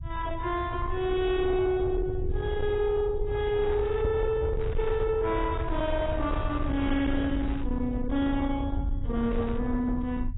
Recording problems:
codec artefacts; AAC, log-spectral distance 2 dB, nothing above 3.5 kHz
distorted audio; soft clipping, signal-to-distortion ratio 10 dB
low-frequency rumble; below 100 Hz, SNR 5 dB
crackle; 4 times, first at 3.5 s; loose cable, SNR 20 dB
handling noise; from 4 to 7.5 s; peak -9 dB vs average level

